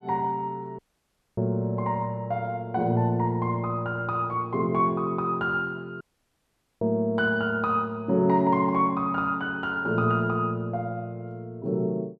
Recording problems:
audio cutting out; at 1 s for 0.5 s and at 6 s for 1 s

